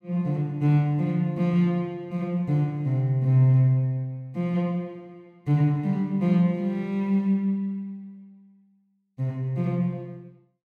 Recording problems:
none

